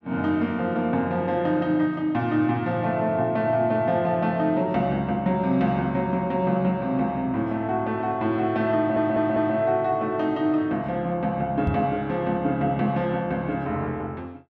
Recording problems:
stutter; at 9 s
knock on the microphone; at 12 s; peak +2 dB vs average level

